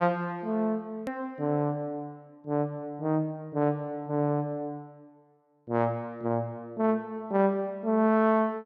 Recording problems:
edit click; at 1 s

